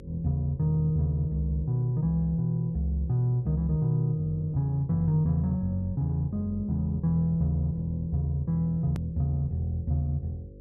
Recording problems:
hum; 50 Hz, harmonics up to 550 Hz, SNR 21 dB
click at an edit; at 9 s

